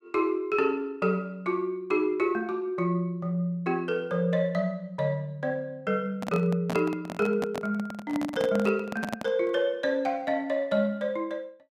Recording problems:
handling noise; from 6 to 9.5 s; peak 0 dB vs average level

